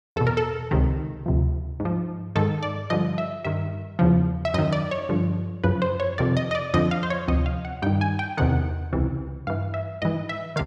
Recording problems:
none

